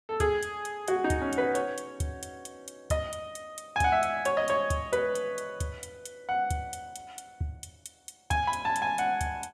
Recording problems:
none

